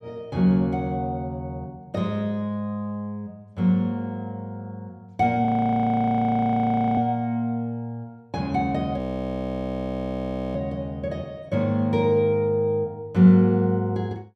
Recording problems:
audio freezing; at 5.5 s for 1.5 s and at 9 s for 1.5 s

